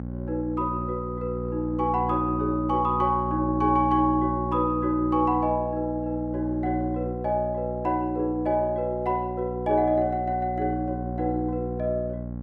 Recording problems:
hum; 60 Hz, harmonics up to 840 Hz, SNR 7 dB

